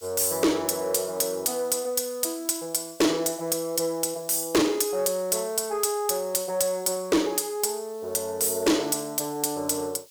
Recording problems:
distortion; soft clipping, signal-to-distortion ratio 6 dB
hiss; slope +5 dB per octave, SNR 25 dB

